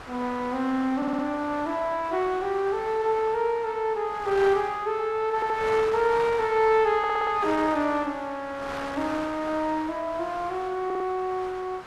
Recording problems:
wind noise; below 2 kHz, SNR 13 dB
stutter; 4 times, first at 1 s

